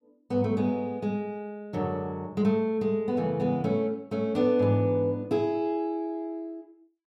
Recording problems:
none

